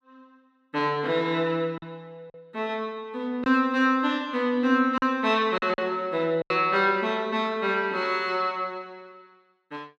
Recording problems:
packet loss; 4% of the sound replaced, filled with silence

